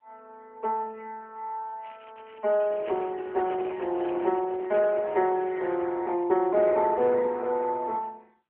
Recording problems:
phone line; 260 Hz to 3.2 kHz, AMR-NB
crackle; from 2 to 4.5 s; loose cable, SNR 27 dB
microphone handling noise; from 2.5 to 6 s; peak -7 dB vs average level

